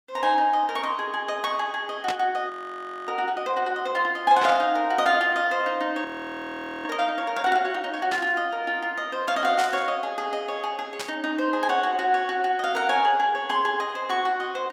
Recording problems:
burst of static; 5 times, first at 2 s; peak -1 dB vs average level
frozen audio; at 2.5 s for 0.5 s and at 6 s for 1 s

